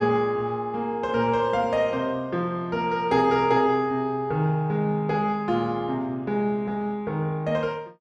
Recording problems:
none

